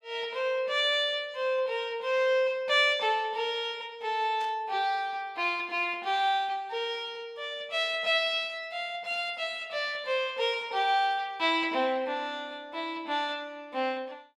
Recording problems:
burst of static; at 4.5 s; peak -14 dB vs average level

